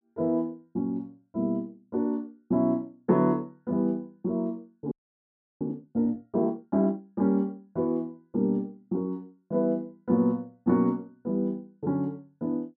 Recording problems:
frozen audio; at 5 s for 0.5 s

